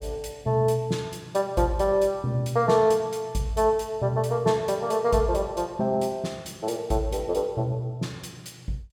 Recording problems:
none

